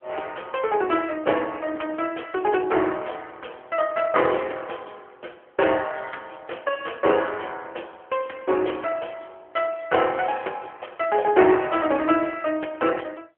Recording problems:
telephone audio; 280 Hz to 3.2 kHz, AMR-NB

